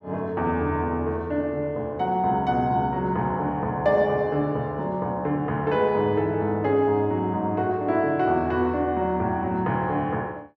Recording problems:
none

